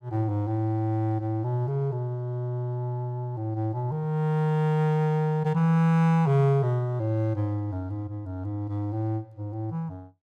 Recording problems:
none

